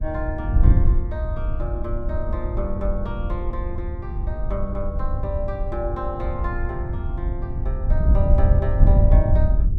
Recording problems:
wind noise; below 86 Hz, SNR -7 dB

